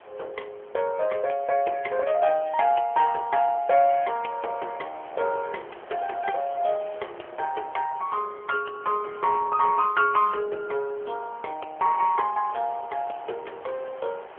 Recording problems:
phone line; 340 Hz to 3.2 kHz, AMR-NB
wind noise; below 1.3 kHz, SNR 20 dB

